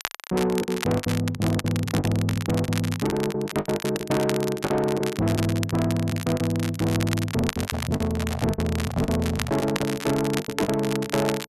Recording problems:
distortion; soft clipping, signal-to-distortion ratio 10 dB
crackling; vinyl, SNR 9 dB
packet loss; 12% of the sound replaced, filled with the last packet
handling noise; from 7.5 to 10 s; peak -3 dB vs average level

